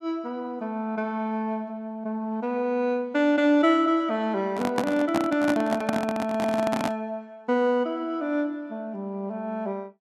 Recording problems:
microphone handling noise; from 4.5 to 7 s; peak +3 dB vs average level

